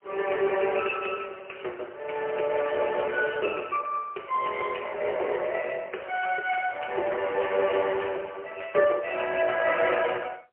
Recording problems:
phone line; 320 Hz to 3.1 kHz, AMR-NB, then MP3
crackle; from 2.5 to 4 s; loose cable, SNR 23 dB

